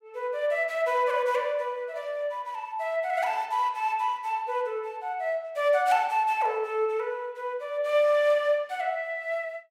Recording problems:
none

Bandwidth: 16 kHz